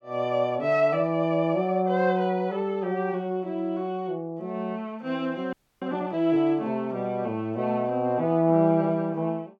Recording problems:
audio freezing; at 5.5 s

